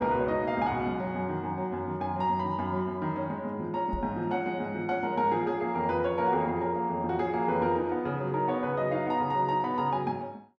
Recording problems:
knock on the microphone; at 4 s; peak -2 dB vs average level

